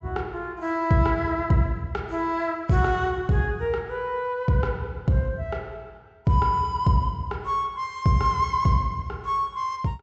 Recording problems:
treble missing; nothing above 8 kHz

